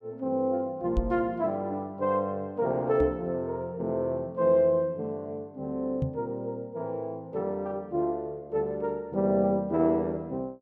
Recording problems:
microphone thump; at 1 s, at 3 s and at 6 s; peak +3 dB vs average level

